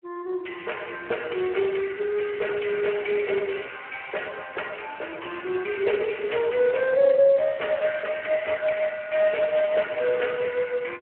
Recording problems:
phone line; 340 Hz to 3.1 kHz, Speex

